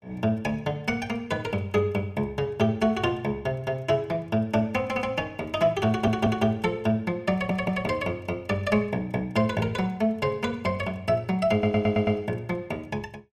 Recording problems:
stutter; at 6 s, at 7.5 s and at 12 s

